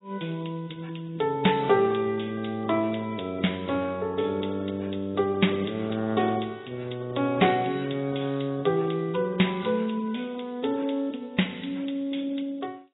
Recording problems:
codec artefacts; AAC, log-spectral distance 7 dB, nothing above 3.8 kHz

